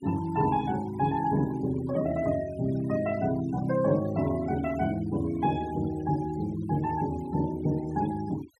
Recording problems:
denoising artefacts; signal-to-artefact ratio 17 dB

